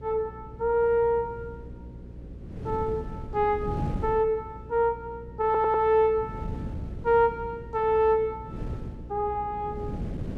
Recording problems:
hum; 60 Hz, harmonics up to 540 Hz, SNR 19 dB
wind noise; below 230 Hz, SNR 13 dB
audio stuttering; at 5.5 s

